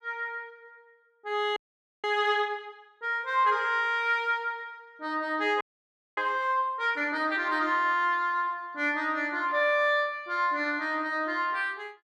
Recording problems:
audio freezing; at 1.5 s and at 5.5 s for 0.5 s

